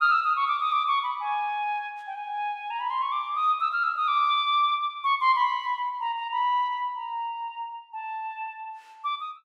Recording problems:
none

